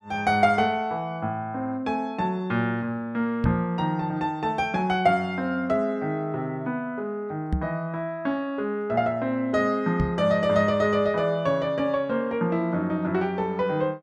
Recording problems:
microphone bump; at 3.5 s, at 7.5 s and at 10 s; peak +3 dB vs average level

